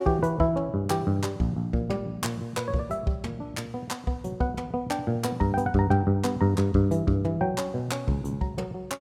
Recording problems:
none

